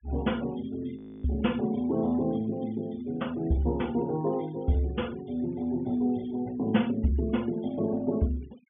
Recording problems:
treble cut off; nothing above 3.4 kHz
noise reduction artefacts; signal-to-artefact ratio 24 dB
frozen audio; at 1 s

